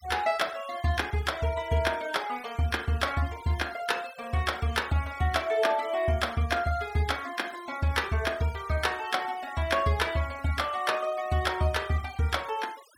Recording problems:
denoising artefacts; signal-to-artefact ratio 19 dB

